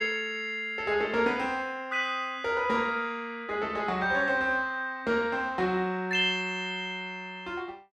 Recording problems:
none

